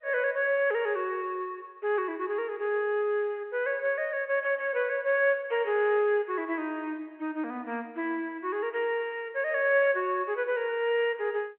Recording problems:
phone line; 260 Hz to 3.3 kHz, G.711

